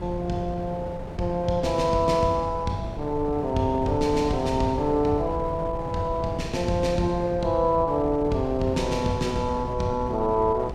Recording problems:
wind noise; below 360 Hz, SNR 10 dB

